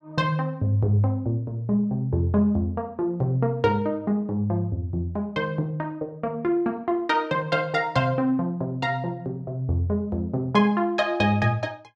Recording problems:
none

